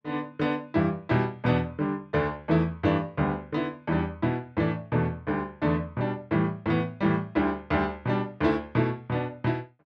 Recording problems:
none

